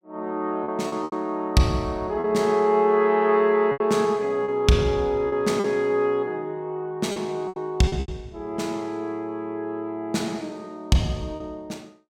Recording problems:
lost packets; 6% of the sound replaced, filled with repeated pitch periods

